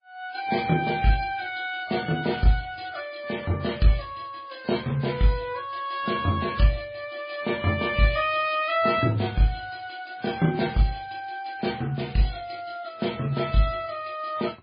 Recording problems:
codec artefacts; MP3, then MP3, log-spectral distance 5 dB, nothing above 4.9 kHz

